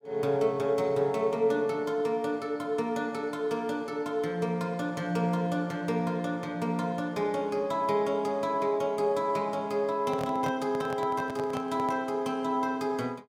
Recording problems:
microphone handling noise; from 10 to 12 s; peak -4 dB vs average level

